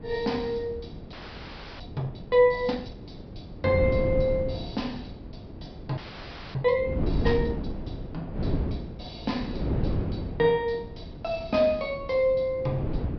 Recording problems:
low-pass filter; nothing above 5.5 kHz
wind on the microphone; below 280 Hz, SNR 7 dB
frozen audio; at 1 s for 0.5 s and at 6 s for 0.5 s

